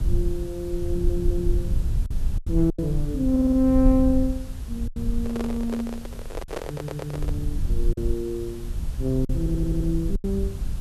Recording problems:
hiss; slope -3 dB per octave, SNR 21 dB
rumble; below 66 Hz, SNR 3 dB
packet loss; 4% of the sound replaced, filled with silence
stutter; 4 times, first at 1 s
microphone handling noise; from 5 to 7.5 s; peak -1 dB vs average level

